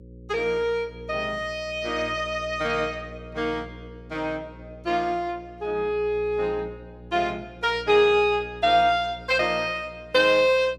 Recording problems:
hum; 60 Hz, harmonics up to 540 Hz, SNR 20 dB

